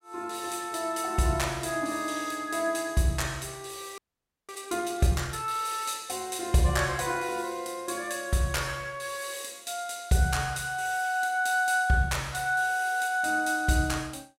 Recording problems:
frozen audio; at 4 s for 0.5 s

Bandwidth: 16 kHz